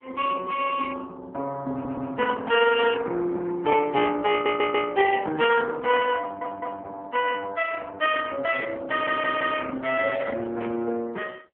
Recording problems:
telephone audio; 280 Hz to 2.9 kHz, AMR-NB
audio stuttering; 4 times, first at 1.5 s
burst of static; at 11 s; peak -16 dB vs average level

